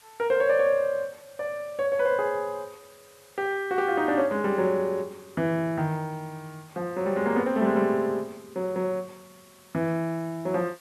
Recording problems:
hiss; slope 0 dB per octave, SNR 27 dB

